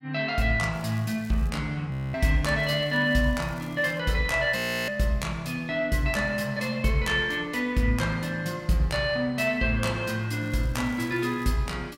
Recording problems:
crackling; at 0.5 s, from 2.5 to 4 s and from 10 to 11 s; loose cable, SNR 27 dB
audio freezing; at 2 s and at 4.5 s

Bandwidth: 16.5 kHz